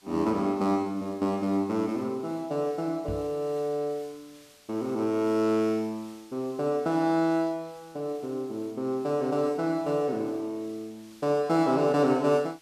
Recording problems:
hiss; slope +1 dB per octave, SNR 27 dB
microphone bump; at 3 s; peak -5 dB vs average level

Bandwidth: 14.5 kHz